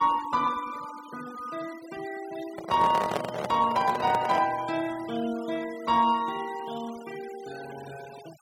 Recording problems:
noise reduction artefacts; signal-to-artefact ratio 18 dB
handling noise; from 2.5 to 4.5 s; peak +2 dB vs average level

